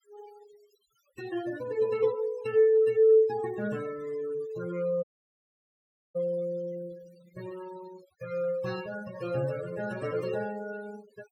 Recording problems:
noise reduction artefacts; signal-to-artefact ratio 19 dB
audio cutting out; at 5 s for 1 s

